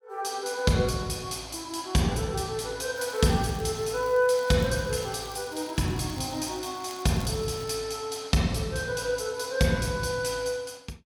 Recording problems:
crackling; from 3 to 7.5 s; loose cable, SNR 21 dB

